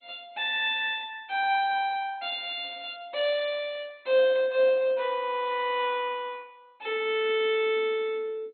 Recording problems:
lossy compression; MP2, log-spectral distance 3 dB, nothing above 3.6 kHz

